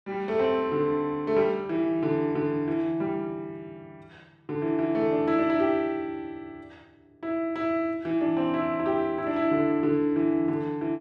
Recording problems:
none

